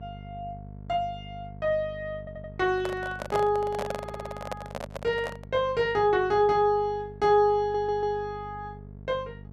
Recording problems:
electrical hum; 50 Hz, harmonics up to 700 Hz, SNR 17 dB
audio stuttering; at 2 s, at 4 s and at 7.5 s
microphone handling noise; from 2.5 to 5.5 s; peak -1 dB vs average level

